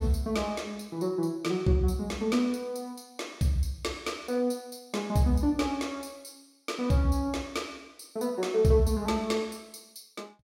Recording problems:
none

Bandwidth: 16 kHz